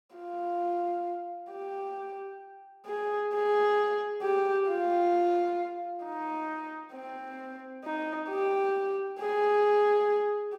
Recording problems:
none

